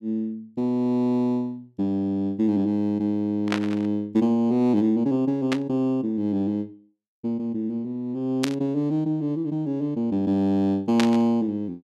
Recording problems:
static burst; 4 times, first at 3.5 s; peak +2 dB vs average level

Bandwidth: 13 kHz